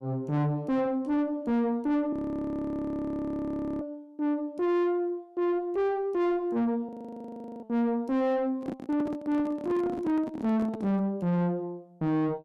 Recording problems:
distortion; soft clipping, signal-to-distortion ratio 6 dB
audio freezing; at 2 s for 1.5 s and at 7 s for 0.5 s
handling noise; from 8.5 to 11 s; peak 0 dB vs average level

